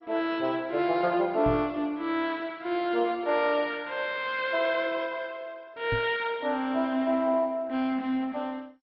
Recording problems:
lossy codec; MP2, log-spectral distance 3 dB, nothing above 4.8 kHz
knock on the microphone; at 1.5 s and at 6 s; peak -2 dB vs average level

